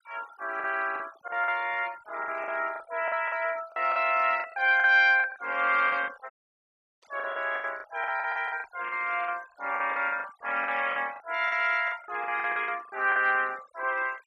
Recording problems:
denoising artefacts; signal-to-artefact ratio 22 dB
lost packets; 14% of the sound replaced, filled with the last packet
dropout; at 6.5 s for 0.5 s
burst of static; at 7 s; peak -32 dB vs average level

